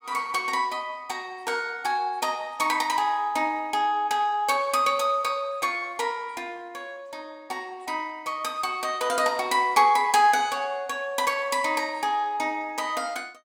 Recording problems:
none

